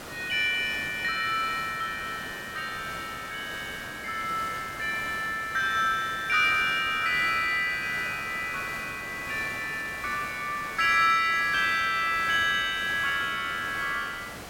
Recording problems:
hiss; slope -4 dB per octave, SNR 13 dB

